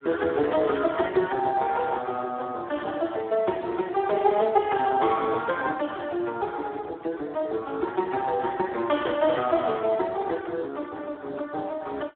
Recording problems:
telephone audio; 280 Hz to 3 kHz, Speex

